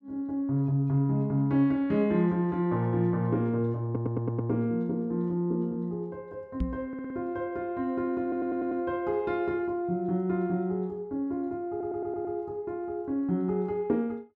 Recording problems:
audio stuttering; 4 times, first at 4 s
microphone thump; at 6.5 s; peak +2 dB vs average level

